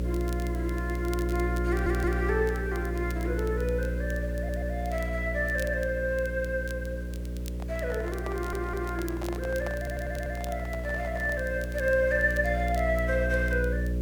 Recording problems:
electrical hum; 60 Hz, harmonics up to 600 Hz, SNR 2 dB
hiss; SNR 20 dB
crackle; vinyl, SNR 20 dB
audio stuttering; 4 times, first at 1.5 s
handling noise; from 7.5 to 11 s; peak -4 dB vs average level

